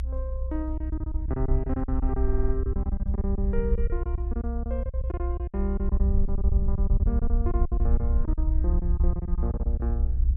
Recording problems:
rumble; below 64 Hz, SNR -6 dB
packet loss; 15% of the sound replaced, filled with silence
stutter; at 2 s

